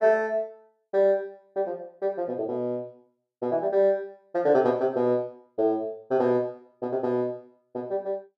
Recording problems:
none

